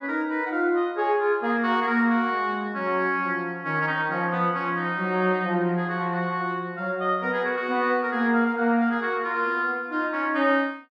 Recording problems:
none

